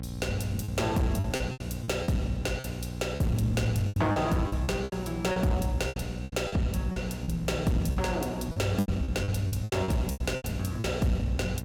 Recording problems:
distortion; soft clipping, signal-to-distortion ratio 12 dB
electrical hum; 60 Hz, harmonics up to 840 Hz, SNR 8 dB
lost packets; 14% of the sound replaced, filled with repeated pitch periods

